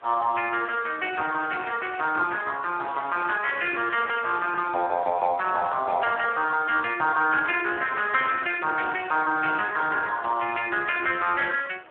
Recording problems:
telephone audio; 280 Hz to 3.4 kHz, Speex
wind noise; below 1.9 kHz, SNR 20 dB

